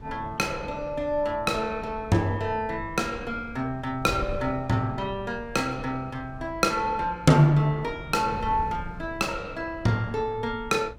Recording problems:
wind noise; below 130 Hz, SNR 16 dB

